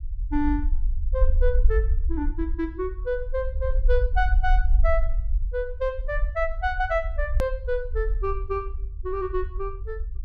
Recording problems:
rumble; below 52 Hz, SNR -1 dB
edit click; at 7.5 s

